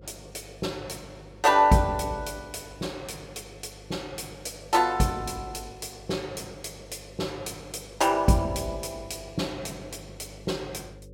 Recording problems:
hum; 50 Hz, harmonics up to 550 Hz, SNR 21 dB

